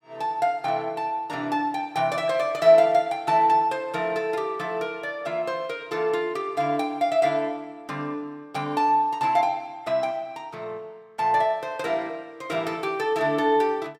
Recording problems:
none

